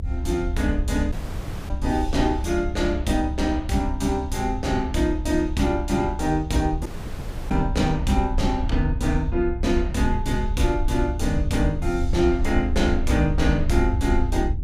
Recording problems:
rumble; below 70 Hz, SNR 5 dB
wind noise; below 110 Hz, SNR 11 dB
dropout; at 1 s for 0.5 s and at 7 s for 0.5 s

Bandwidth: 15 kHz